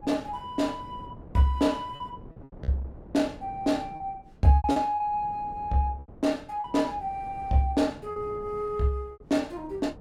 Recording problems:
wind noise; below 360 Hz, SNR 19 dB
lost packets; 5% of the sound replaced, filled with repeated pitch periods

